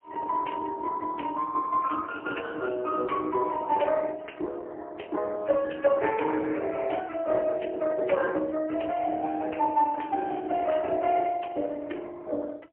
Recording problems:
phone line; 260 Hz to 3 kHz, AMR-NB, then MP3

